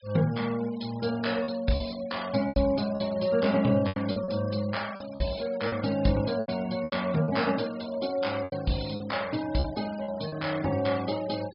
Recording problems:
low-pass filter; nothing above 5.5 kHz
noise reduction artefacts; signal-to-artefact ratio 17 dB
lost packets; 8% of the sound replaced, filled with repeated pitch periods

